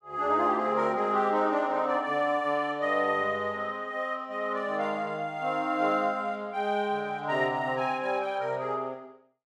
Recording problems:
none

